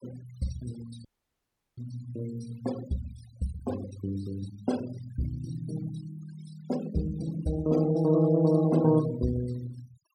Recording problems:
denoising artefacts; signal-to-artefact ratio 17 dB
audio cutting out; at 1 s for 0.5 s

